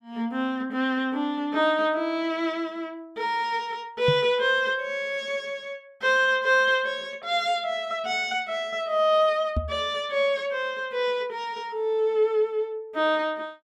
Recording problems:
microphone bump; at 4 s and at 9.5 s; peak +2 dB vs average level

